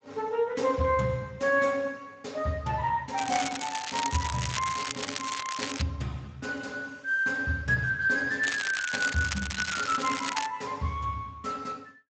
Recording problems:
lossy codec; Speex, log-spectral distance 8 dB, nothing above 7.6 kHz
crackle; from 3 to 6 s and from 8.5 to 10 s; loose cable, SNR 5 dB

